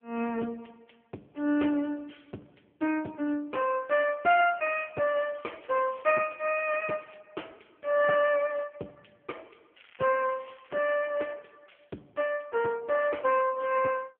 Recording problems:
phone line; 240 Hz to 3 kHz, AMR-NB
crackle; from 5 to 7 s and from 9.5 to 11 s; loose cable, SNR 27 dB

